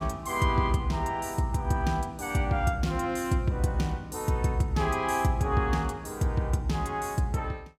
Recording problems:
none

